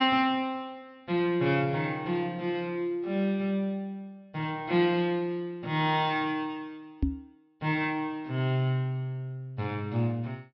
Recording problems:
treble cut off; nothing above 5.5 kHz
knock on the microphone; at 7 s; peak +6 dB vs average level

